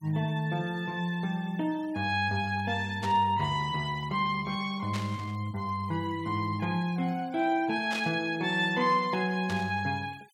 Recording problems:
denoising artefacts; signal-to-artefact ratio 26 dB
burst of static; 4 times, first at 3 s; peak -4 dB vs average level

